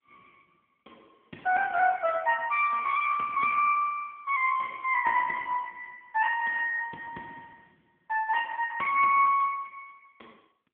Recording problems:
phone line; 280 Hz to 3.3 kHz, AMR-NB

